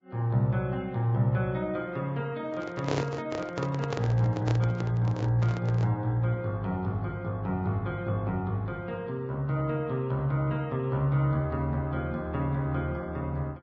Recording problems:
lossy codec; Vorbis, log-spectral distance 2 dB
handling noise; from 2.5 to 6 s; peak +3 dB vs average level

